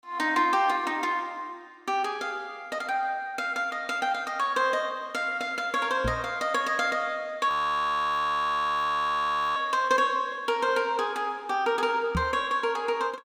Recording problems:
knock on the microphone; at 6 s and at 12 s; peak +1 dB vs average level
frozen audio; at 7.5 s for 2 s

